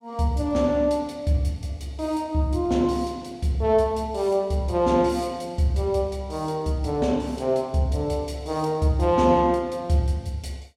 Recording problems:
none

